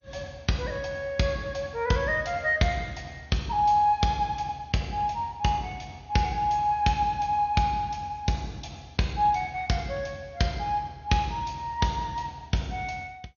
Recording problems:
codec artefacts; MP2, log-spectral distance 4 dB, nothing above 6.7 kHz

